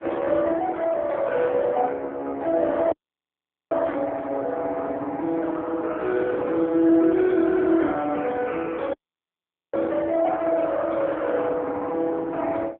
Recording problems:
phone line; 280 Hz to 3.4 kHz, AMR-NB
dropout; at 3 s for 1 s and at 9 s for 1 s

